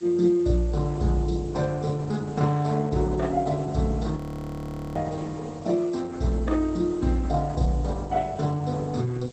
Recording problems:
lossy codec; Opus, log-spectral distance 6 dB, nothing above 15.1 kHz
hiss; slope +4 dB per octave, SNR 27 dB
audio freezing; at 4 s for 1 s

